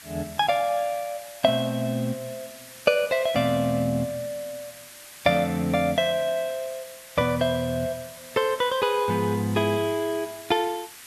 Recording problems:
background hiss; SNR 17 dB

